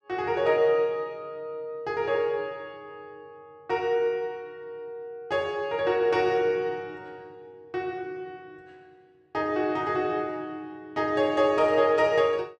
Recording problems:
none

